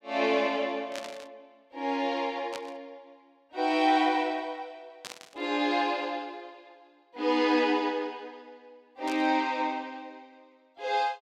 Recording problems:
burst of static; 4 times, first at 1 s; peak -7 dB vs average level

